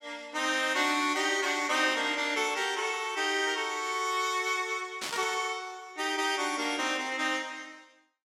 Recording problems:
static burst; at 5 s; peak -2 dB vs average level

